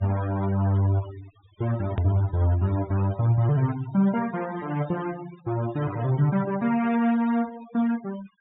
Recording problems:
treble cut off; nothing above 4 kHz
denoising artefacts; signal-to-artefact ratio 17 dB
click at an edit; at 2 s

